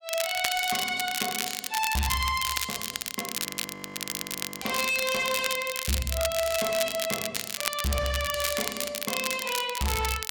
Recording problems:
distorted audio; hard clipping, signal-to-distortion ratio 12 dB
crackling; vinyl, SNR 2 dB
frozen audio; at 3.5 s for 1.5 s

